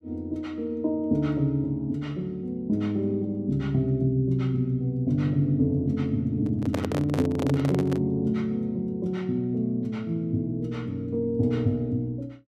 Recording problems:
microphone handling noise; from 6.5 to 8 s; peak +1 dB vs average level

